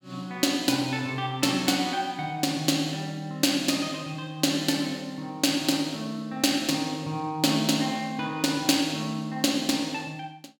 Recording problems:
none

